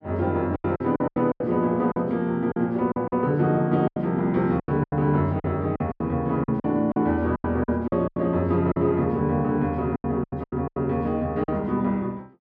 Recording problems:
lost packets; 13% of the sound replaced, filled with silence

